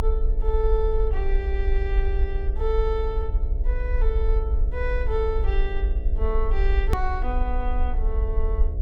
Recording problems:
electrical hum; 60 Hz, harmonics up to 720 Hz, SNR 11 dB
low-frequency rumble; below 52 Hz, strongest tone 28 Hz, SNR -4 dB
edit click; at 7 s

